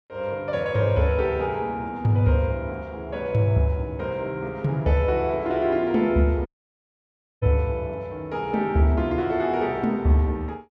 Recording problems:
dropout; at 6.5 s for 1 s

